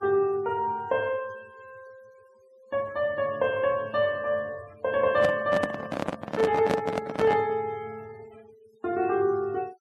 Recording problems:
denoising artefacts; signal-to-artefact ratio 25 dB
handling noise; from 5 to 7.5 s; peak +3 dB vs average level

